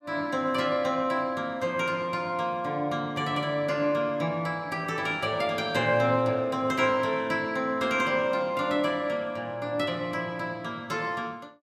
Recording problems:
none

